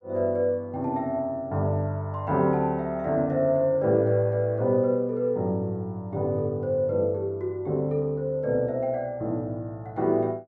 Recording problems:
none

